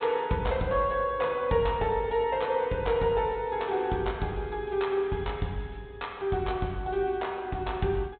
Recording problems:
treble missing; nothing above 4 kHz

